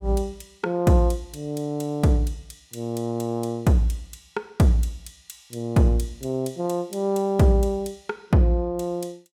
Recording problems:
none

